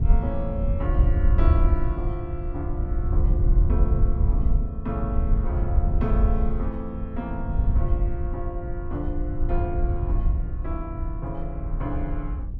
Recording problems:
wind noise; below 76 Hz, SNR -7 dB

